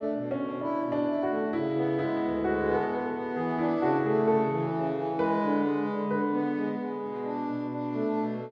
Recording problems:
none

